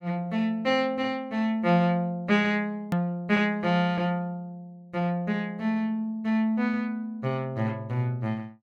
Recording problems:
edit click; at 3 s

